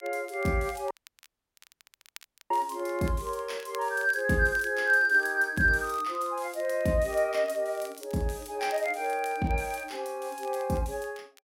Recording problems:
crackling; vinyl, SNR 25 dB
audio cutting out; at 1 s for 1.5 s

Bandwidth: 16 kHz